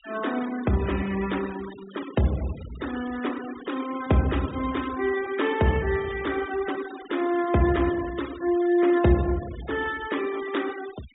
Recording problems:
treble cut off; nothing above 4 kHz
denoising artefacts; signal-to-artefact ratio 16 dB

